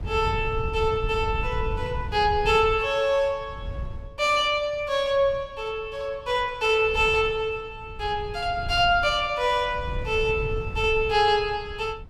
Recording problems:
wind on the microphone; below 100 Hz, SNR 12 dB

